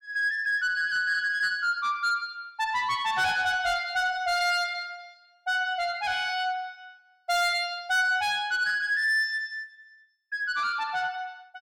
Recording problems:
distorted audio; soft clipping, signal-to-distortion ratio 12 dB

